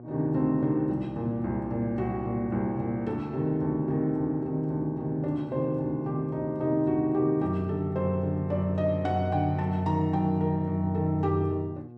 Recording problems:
electrical hum; 60 Hz, harmonics up to 1.1 kHz, SNR 18 dB

